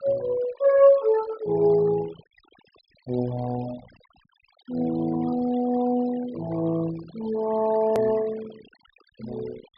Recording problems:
low-pass filter; nothing above 5.5 kHz
denoising artefacts; signal-to-artefact ratio 18 dB
hard cut with a click; at 8 s

